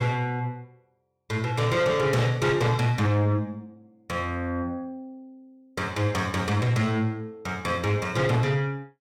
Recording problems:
distortion; soft clipping, signal-to-distortion ratio 11 dB

